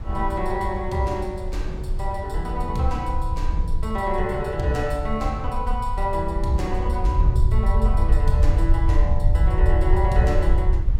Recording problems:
low-frequency rumble; below 68 Hz, SNR -2 dB
wind on the microphone; below 590 Hz, SNR 22 dB

